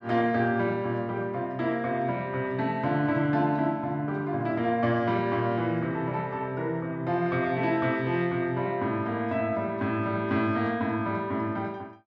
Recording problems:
none

